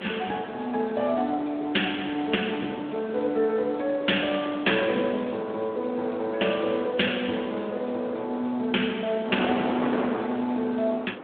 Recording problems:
telephone audio; 220 Hz to 3.5 kHz, Speex
wind noise; below 1 kHz, SNR 10 dB

